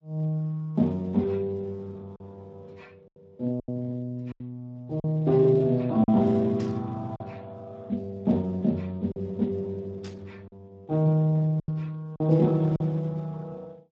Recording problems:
lossy codec; Speex, log-spectral distance 2 dB
lost packets; 4% of the sound replaced, filled with silence
static burst; at 6.5 s and at 10 s; peak -15 dB vs average level

